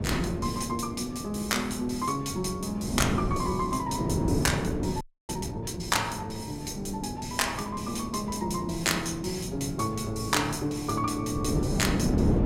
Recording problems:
wind noise; below 330 Hz, SNR 4 dB
frozen audio; at 5 s

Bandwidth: 16 kHz